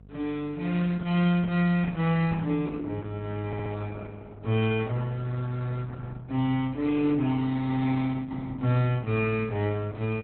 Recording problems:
lossy codec; Opus, log-spectral distance 3 dB, nothing above 3.7 kHz
electrical hum; 50 Hz, harmonics up to 500 Hz, SNR 22 dB
stutter; at 3.5 s

